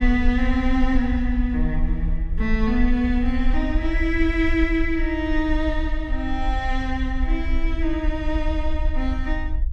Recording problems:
rumble; below 52 Hz, SNR 3 dB

